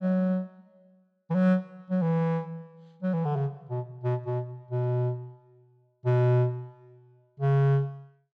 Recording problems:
none

